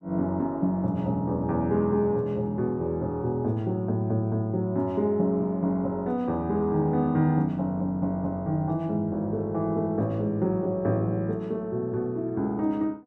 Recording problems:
none

